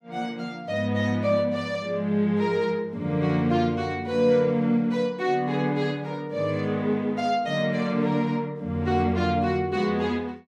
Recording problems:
none

